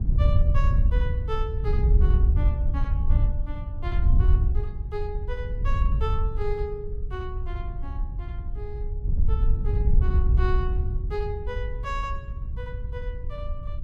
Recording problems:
wind noise; below 74 Hz, SNR -10 dB

